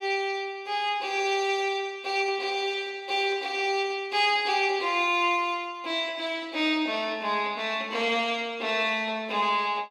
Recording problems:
none

